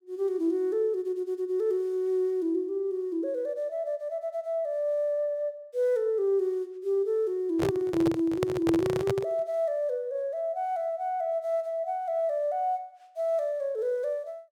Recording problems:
microphone handling noise; from 7.5 to 9.5 s; peak +3 dB vs average level

